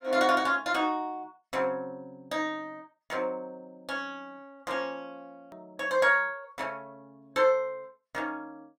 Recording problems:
click at an edit; at 5.5 s

